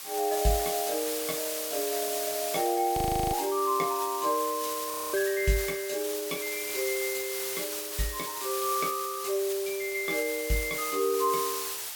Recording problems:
hiss; slope +2 dB per octave, SNR 3 dB
frozen audio; at 3 s and at 5 s

